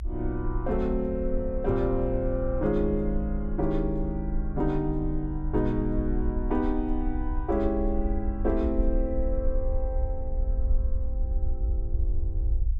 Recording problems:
rumble; below 58 Hz, SNR 3 dB

